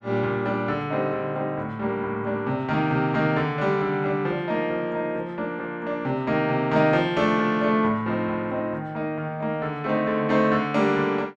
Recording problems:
none

